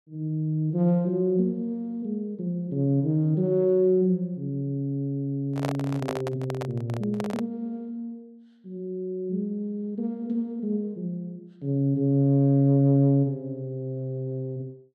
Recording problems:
microphone handling noise; from 5.5 to 7.5 s; peak -2 dB vs average level

